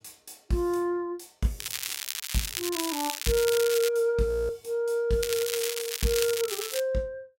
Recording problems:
crackle; from 1.5 to 4 s and from 5 to 7 s; loose cable, SNR 4 dB
frozen audio; at 4.5 s

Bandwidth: 16 kHz